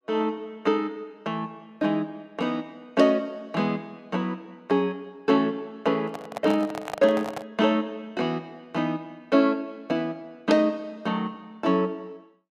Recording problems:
handling noise; from 6 to 7.5 s; peak -2 dB vs average level

